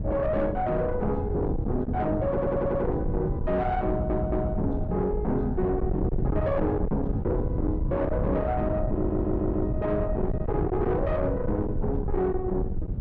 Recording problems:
distorted audio; soft clipping, signal-to-distortion ratio 7 dB
wind on the microphone; below 210 Hz, SNR 3 dB
stutter; at 2.5 s, at 4 s and at 9 s

